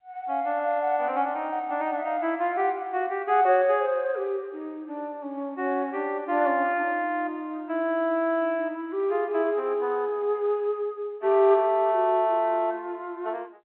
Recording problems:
phone line; 260 Hz to 3.3 kHz, G.711

